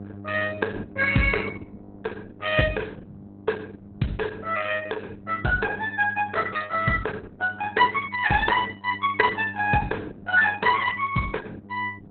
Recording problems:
codec artefacts; Opus, log-spectral distance 4 dB, nothing above 4 kHz
hum; 50 Hz, harmonics up to 800 Hz, SNR 19 dB

